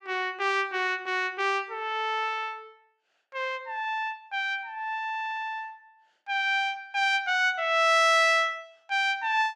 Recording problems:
none

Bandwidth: 14.5 kHz